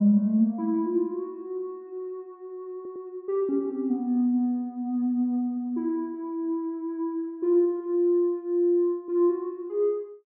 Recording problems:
stutter; at 3 s

